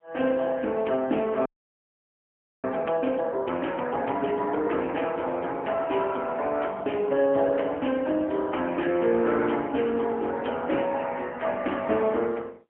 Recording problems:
telephone audio; 240 Hz to 3.2 kHz, AMR-NB, then MP3
frozen audio; at 1.5 s for 1 s

